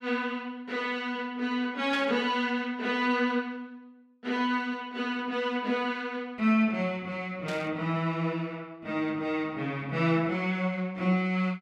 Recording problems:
burst of static; at 2 s and at 7.5 s; peak -6 dB vs average level

